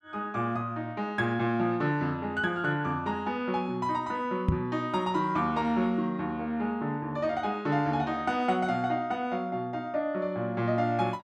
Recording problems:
knock on the microphone; at 4.5 s; peak +7 dB vs average level

